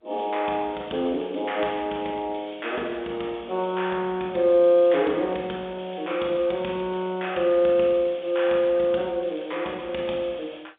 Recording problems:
phone line; 280 Hz to 3.6 kHz, G.711
crackling; 4 times, first at 0.5 s; loose cable, SNR 29 dB

